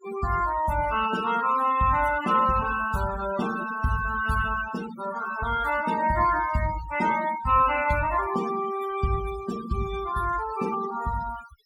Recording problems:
noise reduction artefacts; signal-to-artefact ratio 12 dB

